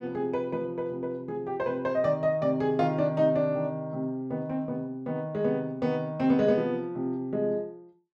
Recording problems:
none

